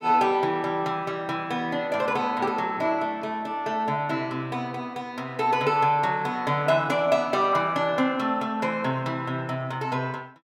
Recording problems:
none

